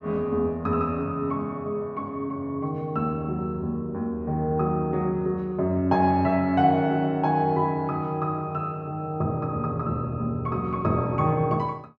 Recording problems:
none

